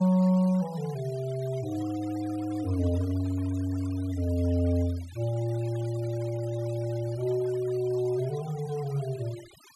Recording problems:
denoising artefacts; signal-to-artefact ratio 21 dB

